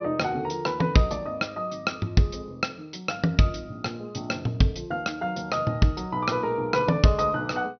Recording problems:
treble cut off; nothing above 6.1 kHz

